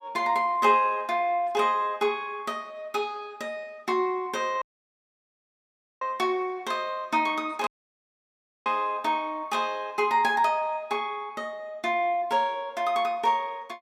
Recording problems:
audio cutting out; at 4.5 s for 1.5 s and at 7.5 s for 1 s

